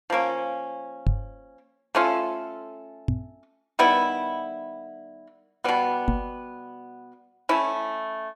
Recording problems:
knock on the microphone; at 1 s, at 3 s and at 6 s; peak +6 dB vs average level

